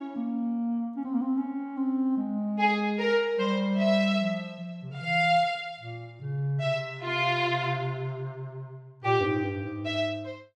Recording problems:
none

